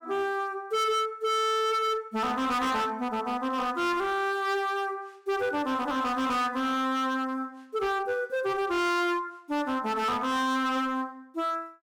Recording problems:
distortion; hard clipping, signal-to-distortion ratio 7 dB

